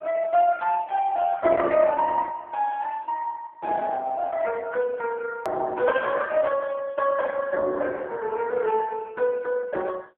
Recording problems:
phone line; 280 Hz to 3.5 kHz, AMR-NB
edit click; at 5.5 s

